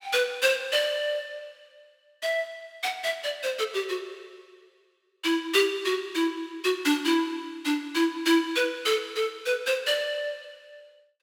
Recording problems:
none

